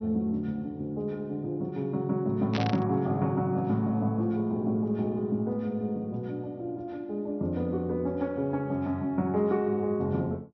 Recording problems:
treble missing; nothing above 6 kHz
static burst; at 2.5 s; peak 0 dB vs average level

